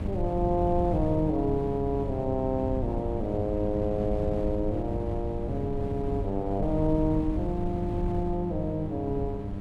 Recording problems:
hum; 50 Hz, harmonics up to 1 kHz, SNR 8 dB
wind noise; below 130 Hz, SNR 6 dB

